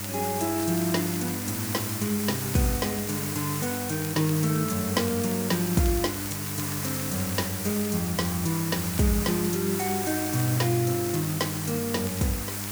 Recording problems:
hum; 50 Hz, harmonics up to 800 Hz, SNR 9 dB
background hiss; SNR 3 dB
crackle; vinyl, SNR 19 dB

